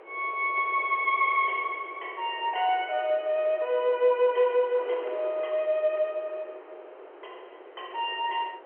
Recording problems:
phone line; 320 Hz to 3.2 kHz, G.711
wind on the microphone; below 850 Hz, SNR 19 dB

